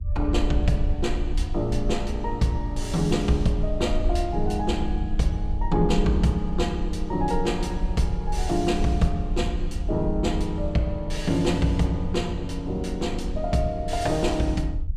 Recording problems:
rumble; below 62 Hz, SNR 5 dB

